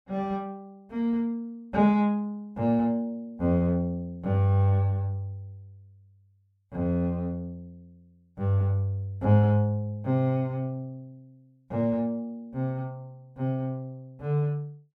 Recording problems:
none

